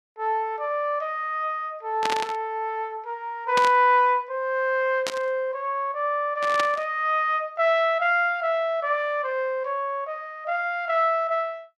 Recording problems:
static burst; 4 times, first at 2 s; peak +1 dB vs average level

